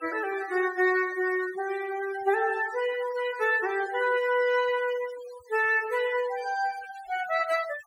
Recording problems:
denoising artefacts; signal-to-artefact ratio 16 dB

